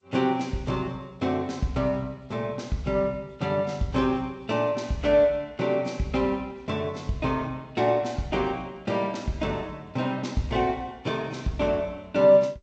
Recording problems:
lossy codec; G.722, then Vorbis, log-spectral distance 2 dB

